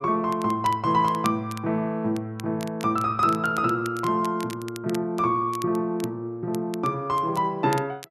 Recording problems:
crackle; vinyl, SNR 19 dB

